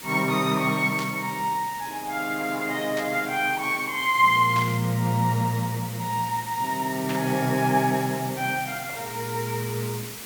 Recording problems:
background hiss; SNR 12 dB
static burst; 4 times, first at 1 s; peak -6 dB vs average level

